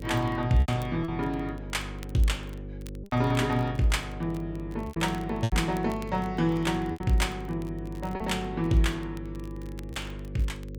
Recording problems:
hum; 50 Hz, harmonics up to 550 Hz, SNR 10 dB
crackling; vinyl, SNR 25 dB
packet loss; 5% of the sound replaced, filled with repeated pitch periods

